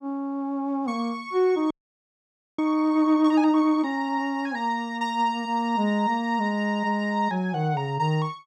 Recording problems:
audio freezing; at 1.5 s for 1 s

